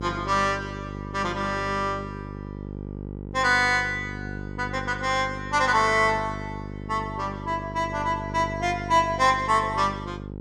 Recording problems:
hum; 50 Hz, harmonics up to 900 Hz, SNR 11 dB

